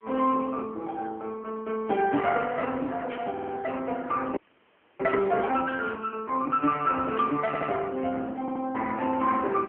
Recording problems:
telephone audio; 190 Hz to 3.3 kHz, AMR-NB
background hiss; SNR 46 dB
burst of static; at 3 s, at 6 s and at 7 s; peak -9 dB vs average level
audio stuttering; at 3.5 s, at 7.5 s and at 8.5 s
audio freezing; at 4.5 s for 0.5 s

